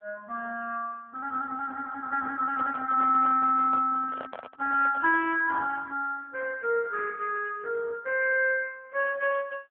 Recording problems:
telephone audio; 280 Hz to 3 kHz, AMR-NB
microphone handling noise; from 2.5 to 5.5 s; peak -9 dB vs average level

